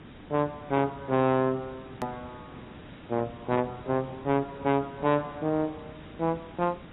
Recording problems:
lossy compression; AAC, log-spectral distance 8 dB, nothing above 13.1 kHz
distortion; soft clipping, signal-to-distortion ratio 12 dB
hiss; SNR 17 dB
hard cut with a click; at 2 s

